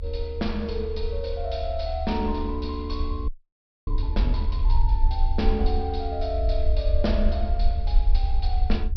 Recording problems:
treble cut off; nothing above 5.5 kHz
rumble; below 62 Hz, SNR -3 dB
audio freezing; at 3.5 s for 0.5 s

